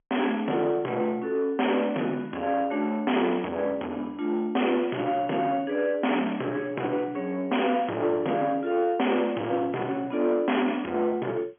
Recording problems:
phone line; 220 Hz to 3.3 kHz, G.711
distorted audio; soft clipping, signal-to-distortion ratio 7 dB

